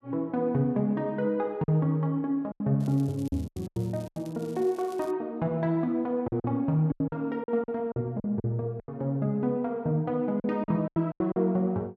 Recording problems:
lost packets; 10% of the sound replaced, filled with silence
crackling; from 3 to 5 s; loose cable, SNR 25 dB

